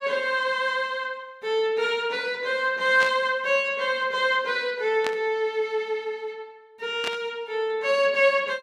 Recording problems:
burst of static; at 3 s, at 5 s and at 7 s; peak -3 dB vs average level

